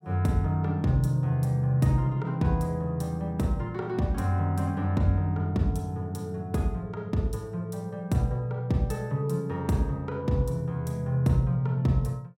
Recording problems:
none

